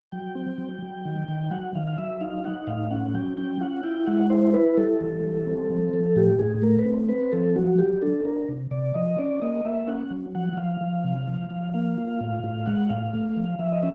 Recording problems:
lossy compression; Opus, log-spectral distance 2 dB

